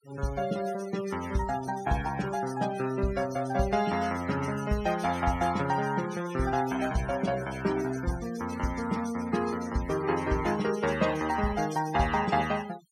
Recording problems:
noise reduction artefacts; signal-to-artefact ratio 15 dB

